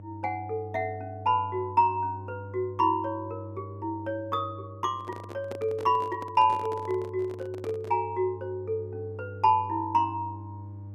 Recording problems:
electrical hum; 50 Hz, harmonics up to 600 Hz, SNR 14 dB
microphone handling noise; from 5 to 8 s; peak -6 dB vs average level

